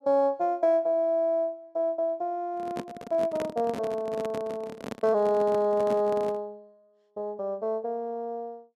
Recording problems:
handling noise; from 2.5 to 6.5 s; peak -3 dB vs average level

